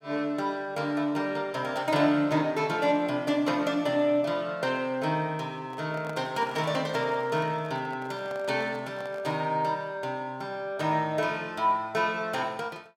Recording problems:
microphone handling noise; from 5.5 to 9.5 s; peak -9 dB vs average level

